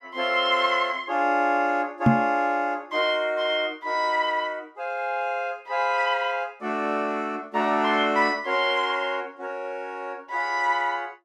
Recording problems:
microphone thump; at 2 s; peak +9 dB vs average level

